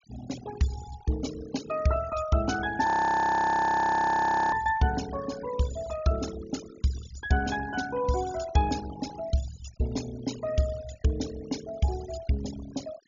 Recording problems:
treble cut off; nothing above 7 kHz
noise reduction artefacts; signal-to-artefact ratio 14 dB
frozen audio; at 3 s for 1.5 s

